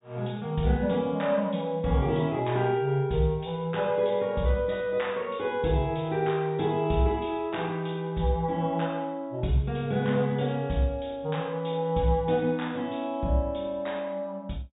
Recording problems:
low-pass filter; nothing above 4 kHz

